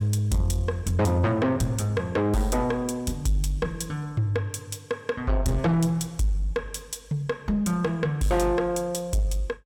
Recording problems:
distortion; soft clipping, signal-to-distortion ratio 11 dB

